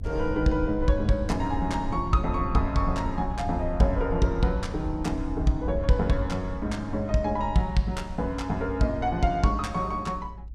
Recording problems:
rumble; below 80 Hz, SNR 8 dB

